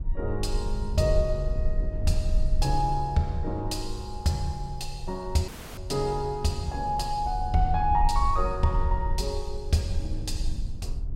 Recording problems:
rumble; below 58 Hz, SNR 4 dB
audio cutting out; at 5.5 s

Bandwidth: 16 kHz